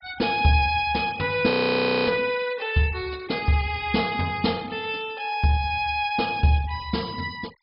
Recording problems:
treble missing; nothing above 5.5 kHz
denoising artefacts; signal-to-artefact ratio 23 dB
audio freezing; at 1.5 s for 0.5 s

